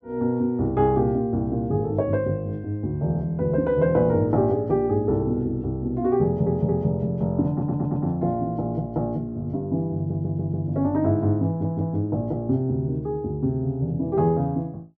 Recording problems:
stutter; 4 times, first at 6 s

